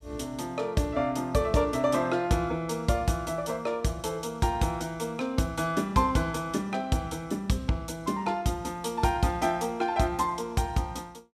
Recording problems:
none

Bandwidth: 15 kHz